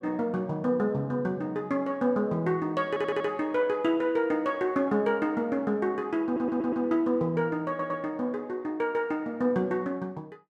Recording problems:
stutter; at 3 s, at 6.5 s and at 7.5 s

